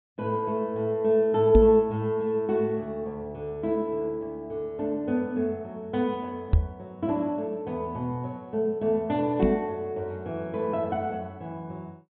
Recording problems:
low-pass filter; nothing above 4 kHz
microphone bump; at 1.5 s, at 6.5 s and at 9.5 s; peak +9 dB vs average level

